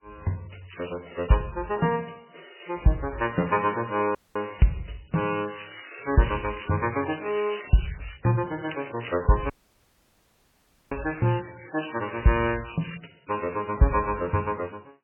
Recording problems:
codec artefacts; MP3, then MP3, log-spectral distance 14 dB, nothing above 2.8 kHz
crackling; at 0.5 s, from 5 to 8 s and from 8.5 to 13 s; loose cable, SNR 14 dB
audio cutting out; at 4 s and at 9.5 s for 1.5 s

